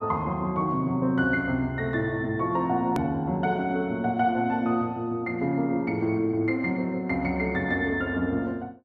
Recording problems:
hard cut with a click; at 3 s

